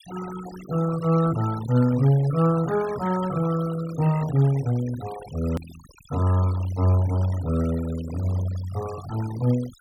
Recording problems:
denoising artefacts; signal-to-artefact ratio 17 dB
hard cut with a click; at 5.5 s

